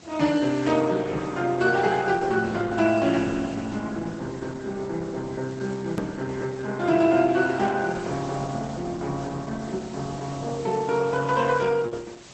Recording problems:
lossy codec; Opus, log-spectral distance 7 dB, nothing above 13.1 kHz
background hiss; slope -2 dB per octave, SNR 21 dB
hard cut with a click; at 6 s

